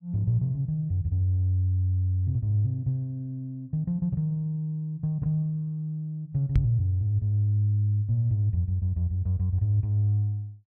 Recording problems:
knock on the microphone; at 6.5 s; peak +6 dB vs average level

